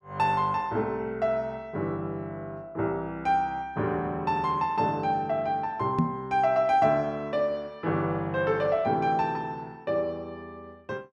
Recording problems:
microphone bump; at 6 s; peak +6 dB vs average level

